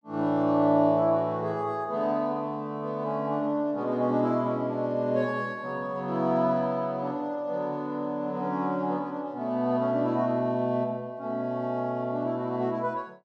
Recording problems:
none

